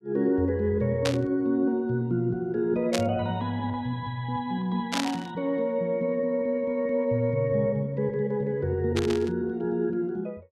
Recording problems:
static burst; 4 times, first at 1 s; peak +2 dB vs average level

